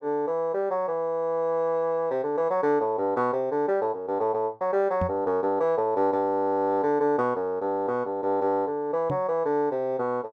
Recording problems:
microphone bump; at 5 s and at 9 s; peak -1 dB vs average level

